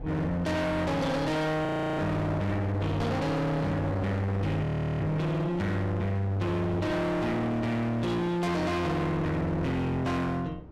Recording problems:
distorted audio; hard clipping, uneven, signal-to-distortion ratio 6 dB
wind on the microphone; below 550 Hz, SNR 15 dB
audio freezing; at 1.5 s and at 4.5 s

